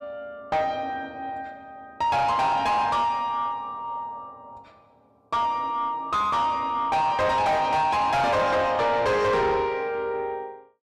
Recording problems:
distorted audio; soft clipping, signal-to-distortion ratio 7 dB

